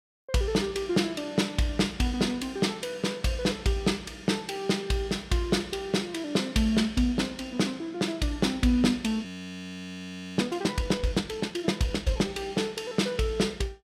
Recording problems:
audio freezing; at 9.5 s for 1 s

